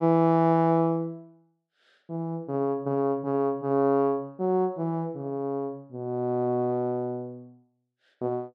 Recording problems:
none

